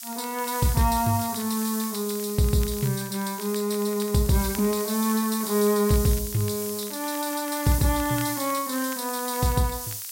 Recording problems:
background hiss; slope +7 dB per octave, SNR 7 dB
crackling; vinyl, SNR 21 dB

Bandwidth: 16 kHz